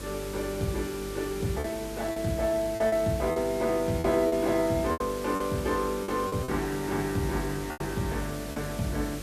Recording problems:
hum; 50 Hz, harmonics up to 550 Hz, SNR 14 dB
hiss; slope -1 dB per octave, SNR 13 dB
lost packets; 7% of the sound replaced, filled with repeated pitch periods

